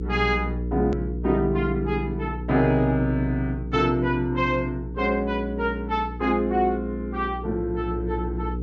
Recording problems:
treble missing; nothing above 7.6 kHz
hum; 60 Hz, harmonics up to 480 Hz, SNR 7 dB
click at an edit; at 1 s

